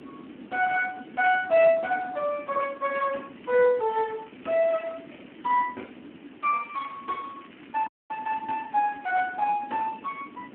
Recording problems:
telephone audio; 240 Hz to 3.2 kHz, Speex
background hiss; SNR 27 dB
wind noise; below 370 Hz, SNR 19 dB
crackle; from 3.5 to 5.5 s and from 6.5 to 9 s; loose cable, SNR 27 dB
audio freezing; at 8 s

